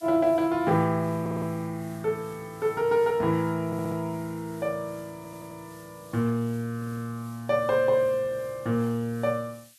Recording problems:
hiss; slope +8 dB per octave, SNR 25 dB
stutter; 4 times, first at 1 s

